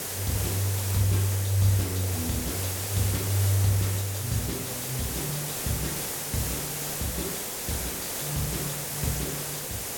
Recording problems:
hum; 50 Hz, harmonics up to 400 Hz, SNR 33 dB
background hiss; SNR 1 dB

